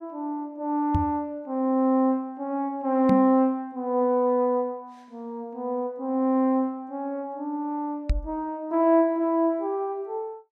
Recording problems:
knock on the microphone; at 1 s, at 3 s and at 8 s; peak +4 dB vs average level

